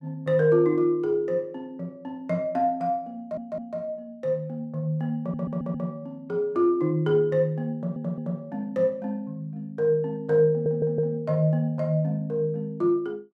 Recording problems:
stutter; 4 times, first at 3 s

